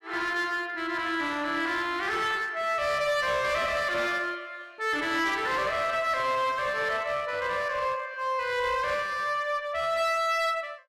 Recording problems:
distortion; hard clipping, uneven, signal-to-distortion ratio 9 dB

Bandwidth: 14.5 kHz